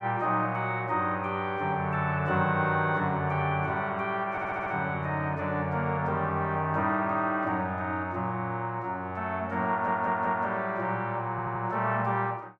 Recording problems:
audio stuttering; at 4.5 s, at 9.5 s and at 11 s

